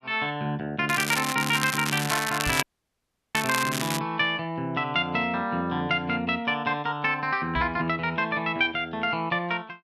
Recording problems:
crackle; from 1 to 4 s; loose cable, SNR 4 dB
knock on the microphone; at 2.5 s and at 7.5 s; peak -4 dB vs average level
audio cutting out; at 2.5 s for 0.5 s

